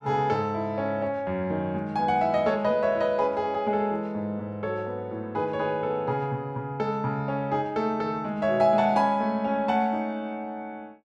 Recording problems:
none

